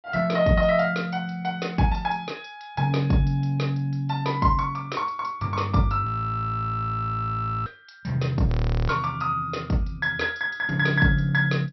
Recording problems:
treble cut off; nothing above 5.7 kHz
frozen audio; at 6 s for 1.5 s and at 8.5 s

